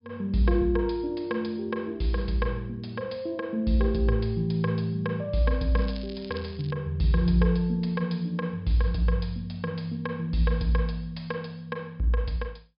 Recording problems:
treble cut off; nothing above 5.5 kHz
crackling; at 6 s; loose cable, SNR 19 dB

